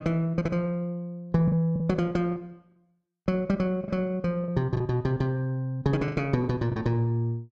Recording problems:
lost packets; 6% of the sound replaced, filled with the last packet

